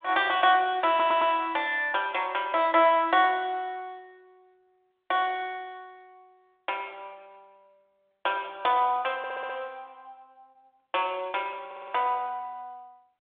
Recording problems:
telephone audio; 280 Hz to 3.6 kHz, G.726
audio stuttering; at 1 s, at 9 s and at 12 s

